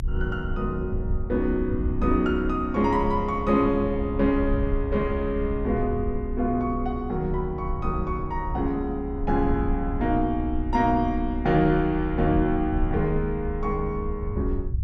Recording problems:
low-frequency rumble; below 66 Hz, strongest tone 30 Hz, SNR 7 dB

